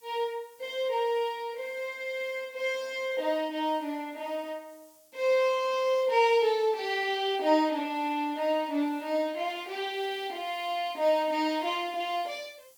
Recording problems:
background hiss; SNR 28 dB

